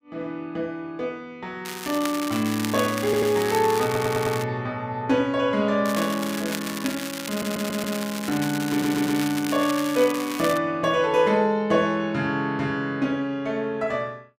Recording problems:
crackle; from 1.5 to 4.5 s and from 6 to 11 s; loose cable, SNR 9 dB
stutter; 4 times, first at 3 s

